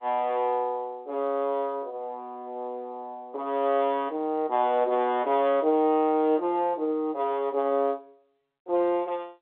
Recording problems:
phone line; 280 Hz to 3.9 kHz, G.711

